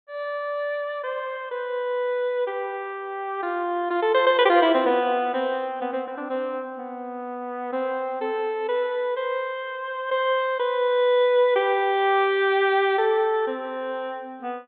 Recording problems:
treble cut off; nothing above 4 kHz

